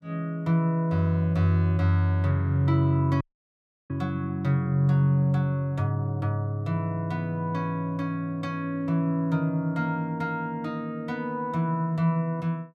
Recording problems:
audio cutting out; at 3 s for 0.5 s

